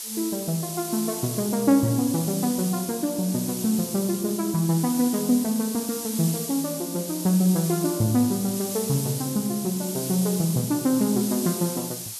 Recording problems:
hiss; SNR 7 dB

